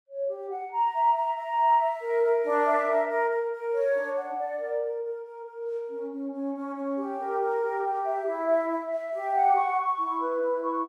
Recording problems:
none

